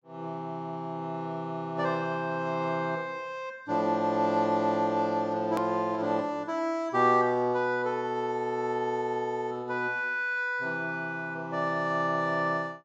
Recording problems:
treble cut off; nothing above 8 kHz
hard cut with a click; at 5.5 s

